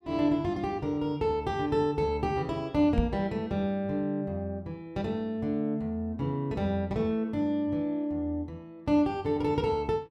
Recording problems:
microphone bump; at 3 s; peak +5 dB vs average level

